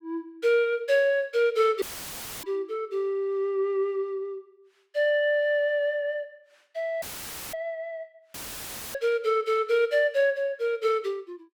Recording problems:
audio cutting out; at 2 s for 0.5 s, at 7 s for 0.5 s and at 8.5 s for 0.5 s; filled with static

